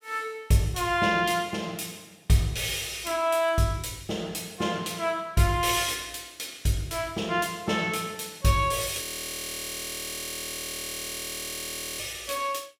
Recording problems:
frozen audio; at 9 s for 3 s

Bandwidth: 16 kHz